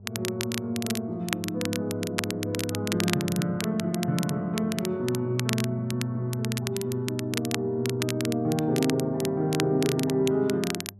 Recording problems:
electrical hum; 50 Hz, harmonics up to 600 Hz, SNR 21 dB
crackle; vinyl, SNR 7 dB

